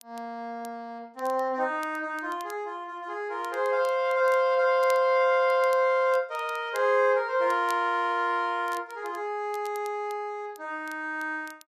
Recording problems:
crackling; vinyl, SNR 25 dB

